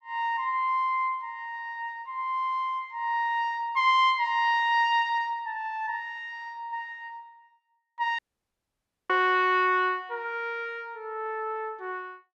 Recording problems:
audio cutting out; at 8 s for 1 s

